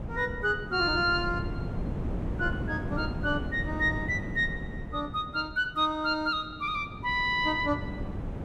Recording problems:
wind on the microphone; below 260 Hz, SNR 7 dB

